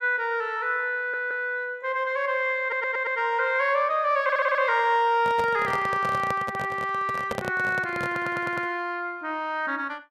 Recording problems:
audio stuttering; 4 times, first at 1 s
handling noise; from 5 to 8.5 s; peak -1 dB vs average level

